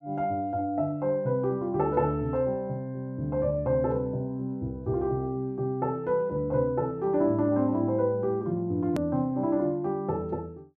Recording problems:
click at an edit; at 9 s

